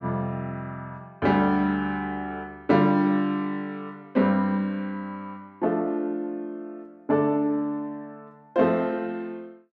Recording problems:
none

